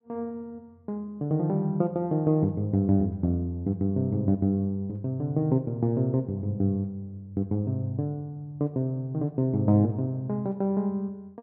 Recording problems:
none

